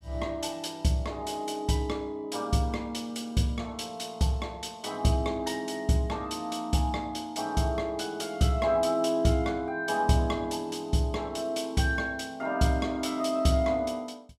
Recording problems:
none

